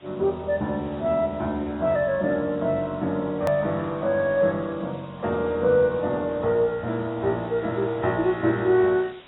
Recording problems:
codec artefacts; AAC, log-spectral distance 3 dB, nothing above 18.9 kHz
background hiss; SNR 27 dB
hard cut with a click; at 3.5 s

